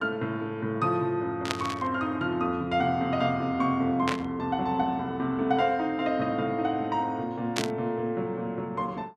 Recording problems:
burst of static; at 1.5 s, at 4 s and at 7.5 s; peak +3 dB vs average level

